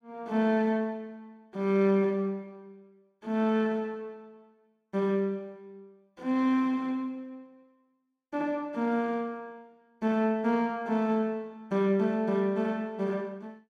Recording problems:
none

